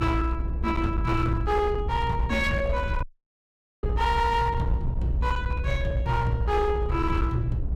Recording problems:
distorted audio; hard clipping, uneven, signal-to-distortion ratio 11 dB
rumble; below 72 Hz, strongest tone 60 Hz, SNR 4 dB
wind noise; below 260 Hz, SNR 14 dB
audio cutting out; at 3 s for 1 s

